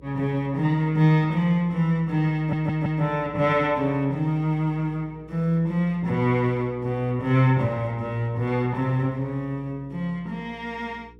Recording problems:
hum; 60 Hz, harmonics up to 480 Hz, SNR 25 dB
audio stuttering; at 2.5 s

